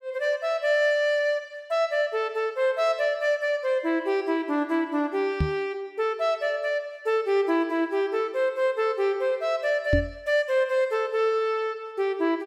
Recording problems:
knock on the microphone; at 5.5 s and at 10 s; peak +5 dB vs average level

